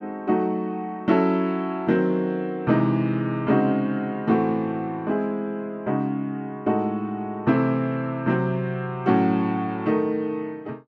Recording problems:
none

